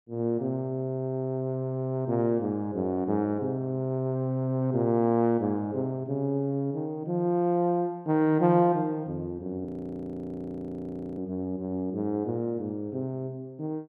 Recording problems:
frozen audio; at 9.5 s for 1.5 s

